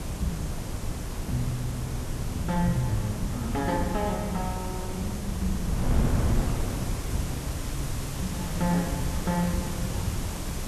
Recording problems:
hiss; SNR 8 dB
wind on the microphone; below 190 Hz, SNR 1 dB

